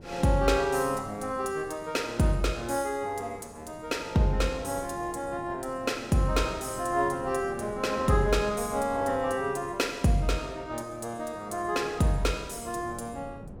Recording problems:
wind noise; below 330 Hz, SNR 19 dB

